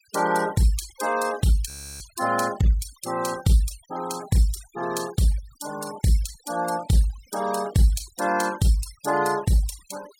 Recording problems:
denoising artefacts; signal-to-artefact ratio 18 dB
audio freezing; at 1.5 s

